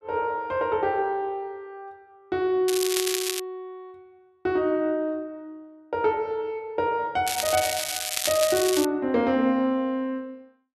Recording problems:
crackle; at 2.5 s and from 7.5 to 9 s; loose cable, SNR 2 dB

